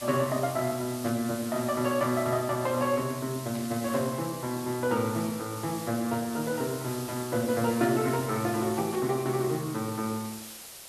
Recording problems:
lossy codec; Speex, log-spectral distance 2 dB
hiss; slope 0 dB per octave, SNR 12 dB
burst of static; 4 times, first at 1 s; peak -13 dB vs average level

